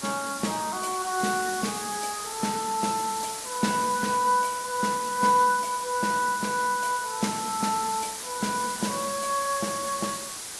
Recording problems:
codec artefacts; AAC, log-spectral distance 13 dB, nothing above 12 kHz
hiss; SNR 7 dB

